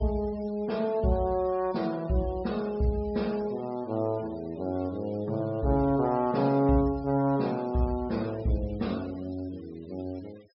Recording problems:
treble missing; nothing above 5.5 kHz
noise reduction artefacts; signal-to-artefact ratio 24 dB

